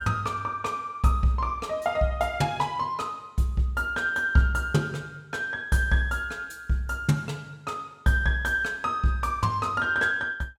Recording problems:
none

